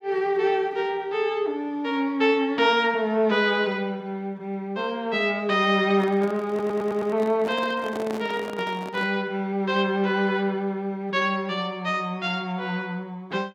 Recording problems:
handling noise; from 6 to 9 s; peak -6 dB vs average level
stutter; at 6.5 s

